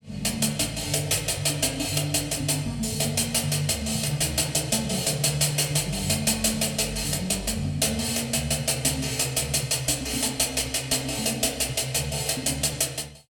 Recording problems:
none

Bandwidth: 17.5 kHz